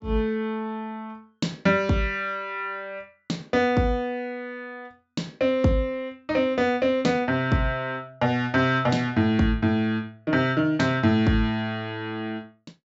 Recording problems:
treble cut off; nothing above 8 kHz

